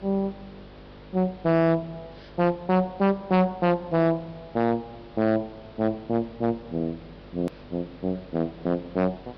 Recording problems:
treble missing; nothing above 5.5 kHz
distorted audio; hard clipping, signal-to-distortion ratio 11 dB
hum; 50 Hz, harmonics up to 600 Hz, SNR 23 dB
hiss; SNR 24 dB
click at an edit; at 7.5 s

